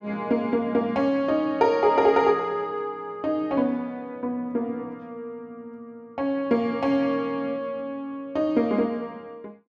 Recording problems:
none

